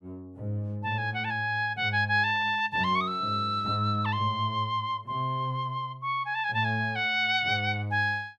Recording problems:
none

